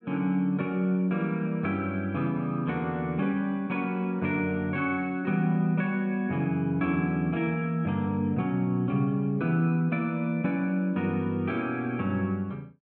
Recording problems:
none

